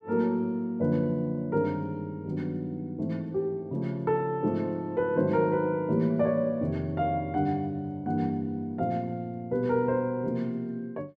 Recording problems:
none

